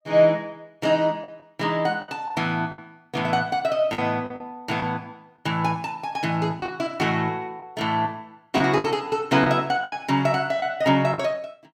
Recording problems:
lost packets; 6% of the sound replaced, filled with the last packet

